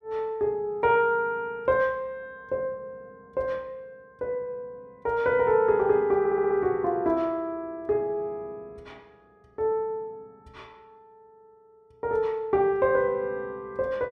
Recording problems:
stutter; at 6 s

